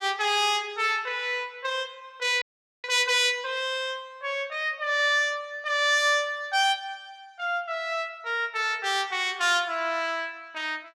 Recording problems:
frozen audio; at 2.5 s

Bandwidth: 16 kHz